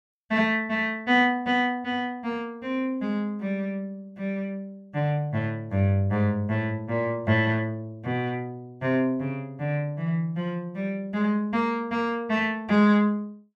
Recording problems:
none

